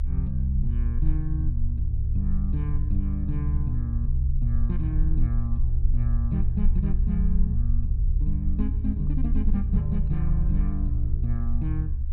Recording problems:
rumble; below 68 Hz, SNR -2 dB

